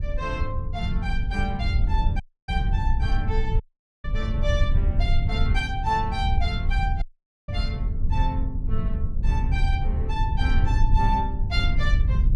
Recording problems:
low-frequency rumble; below 80 Hz, SNR -4 dB
dropout; at 2 s, at 3.5 s and at 7 s

